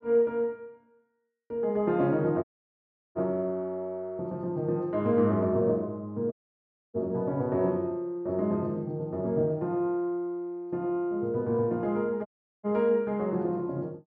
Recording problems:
dropout; at 2.5 s for 0.5 s, at 6.5 s for 0.5 s and at 12 s

